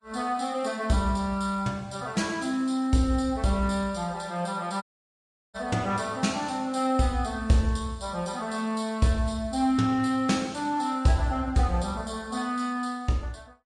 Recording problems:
lossy compression; Vorbis, log-spectral distance 3 dB
dropout; at 5 s for 0.5 s

